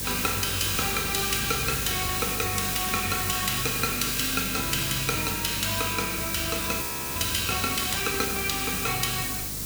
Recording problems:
hum; 50 Hz, harmonics up to 600 Hz, SNR 13 dB
hiss; SNR 1 dB
audio freezing; at 7 s

